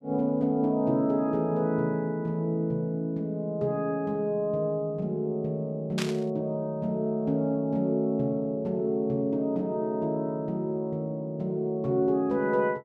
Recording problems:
burst of static; at 6 s; peak -1 dB vs average level

